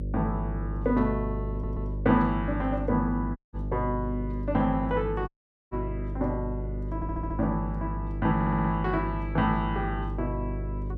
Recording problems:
hum; 50 Hz, harmonics up to 550 Hz, SNR 4 dB
audio stuttering; at 1.5 s, at 7 s and at 8.5 s
dropout; at 3.5 s and at 5.5 s

